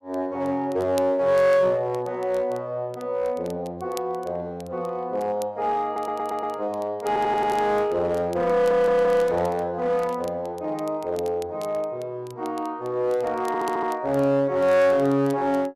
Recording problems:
distortion; hard clipping, uneven, signal-to-distortion ratio 10 dB
crackling; vinyl, SNR 25 dB
stutter; 4 times, first at 6 s

